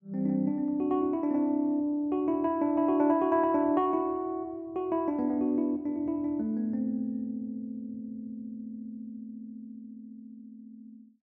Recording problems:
none

